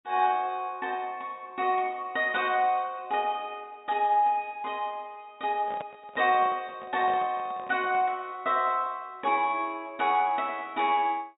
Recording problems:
treble cut off; nothing above 4 kHz
microphone handling noise; from 5.5 to 8 s; peak -7 dB vs average level

